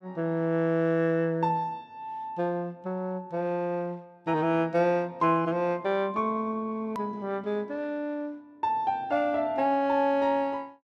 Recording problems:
edit click; at 7 s

